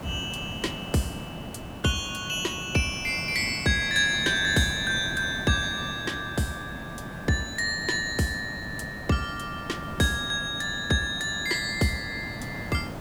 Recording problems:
background hiss; SNR 11 dB

